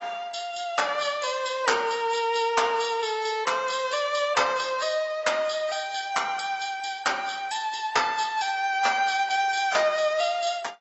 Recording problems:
codec artefacts; AAC, log-spectral distance 4 dB, nothing above 7.8 kHz

